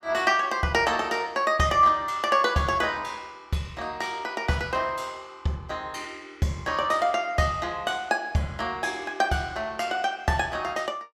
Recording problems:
none

